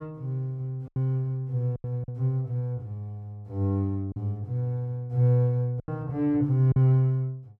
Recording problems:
lost packets; 5% of the sound replaced, filled with silence

